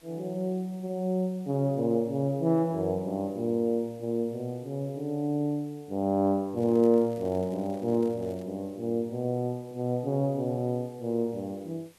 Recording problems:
hiss; slope -2 dB per octave, SNR 30 dB
crackling; from 6.5 to 8.5 s; loose cable, SNR 28 dB

